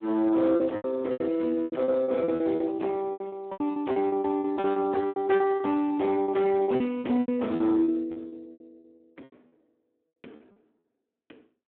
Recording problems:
telephone audio; 220 Hz to 2.2 kHz, Speex
distorted audio; hard clipping, signal-to-distortion ratio 11 dB
lost packets; 18% of the sound replaced, filled with repeated pitch periods

